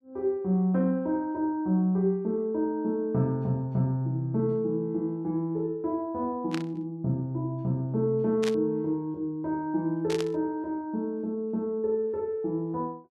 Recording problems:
burst of static; at 6.5 s, at 8.5 s and at 10 s; peak -2 dB vs average level

